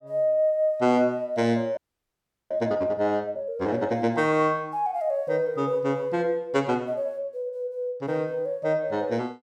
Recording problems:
frozen audio; at 2 s for 0.5 s

